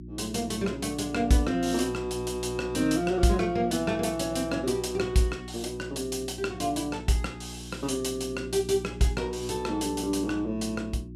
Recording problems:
hum; 60 Hz, harmonics up to 360 Hz, SNR 13 dB

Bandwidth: 14.5 kHz